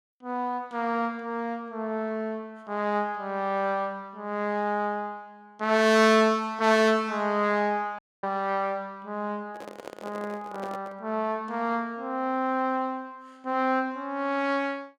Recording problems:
dropout; at 8 s
microphone handling noise; from 9.5 to 11 s; peak -7 dB vs average level

